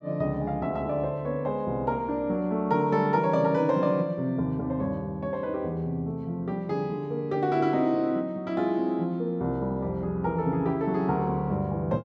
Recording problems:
none

